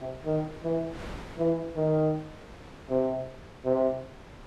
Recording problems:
wind on the microphone; below 1.3 kHz, SNR 17 dB

